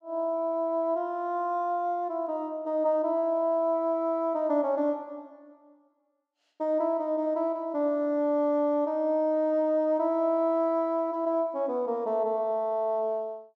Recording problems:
none

